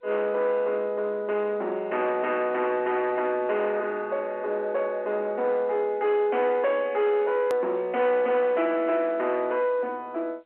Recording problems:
telephone audio; 300 Hz to 3.4 kHz, G.711
distortion; soft clipping, signal-to-distortion ratio 11 dB
edit click; at 7.5 s

